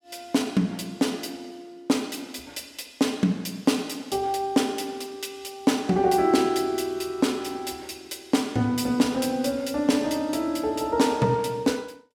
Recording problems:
none

